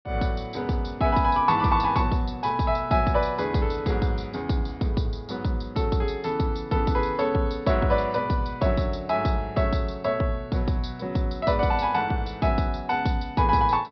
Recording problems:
treble missing; nothing above 5.5 kHz

